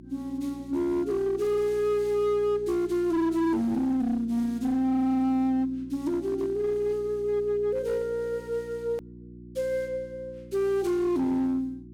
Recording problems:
distorted audio; hard clipping, uneven, signal-to-distortion ratio 11 dB
hum; 60 Hz, harmonics up to 360 Hz, SNR 18 dB
edit click; at 9 s

